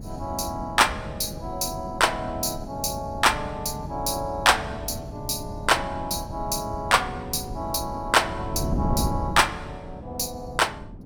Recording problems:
wind on the microphone; below 230 Hz, SNR 10 dB

